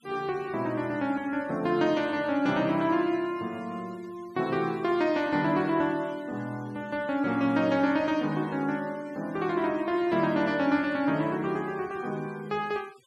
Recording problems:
denoising artefacts; signal-to-artefact ratio 24 dB

